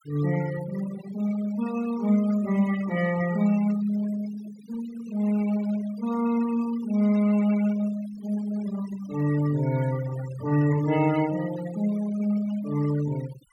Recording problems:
denoising artefacts; signal-to-artefact ratio 16 dB

